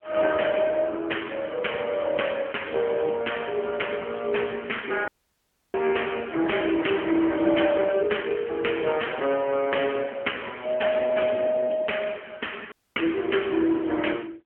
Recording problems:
telephone audio; 260 Hz to 3.3 kHz, AMR-NB
audio cutting out; at 5 s for 0.5 s and at 13 s

